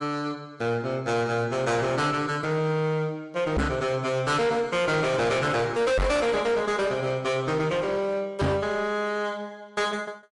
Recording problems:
codec artefacts; MP3, log-spectral distance 2 dB, nothing above 11 kHz
distorted audio; hard clipping, uneven, signal-to-distortion ratio 6 dB
microphone bump; at 3.5 s, at 6 s and at 8.5 s; peak +5 dB vs average level

